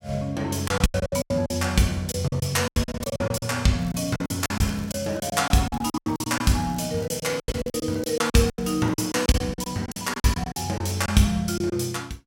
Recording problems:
lost packets; 17% of the sound replaced, filled with silence
crackling; from 4 to 9.5 s; loose cable, SNR 25 dB

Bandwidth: 16.5 kHz